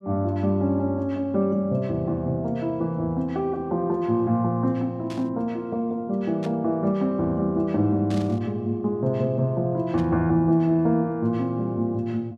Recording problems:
static burst; 4 times, first at 5 s; peak -12 dB vs average level

